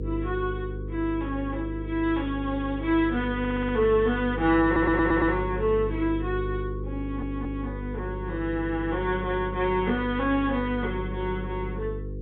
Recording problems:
treble cut off; nothing above 4 kHz
electrical hum; 50 Hz, harmonics up to 500 Hz, SNR 7 dB
audio stuttering; at 3.5 s, at 4.5 s and at 7 s

